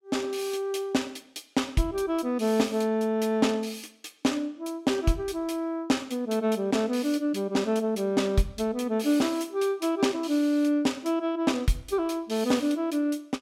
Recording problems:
none

